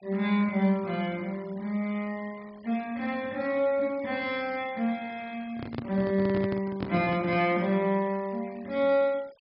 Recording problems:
low-pass filter; nothing above 5.5 kHz
denoising artefacts; signal-to-artefact ratio 24 dB
microphone handling noise; from 5.5 to 7.5 s; peak -1 dB vs average level

